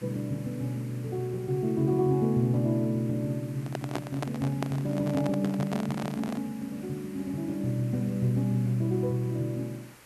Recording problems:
hiss; SNR 22 dB
handling noise; from 3.5 to 6.5 s; peak 0 dB vs average level

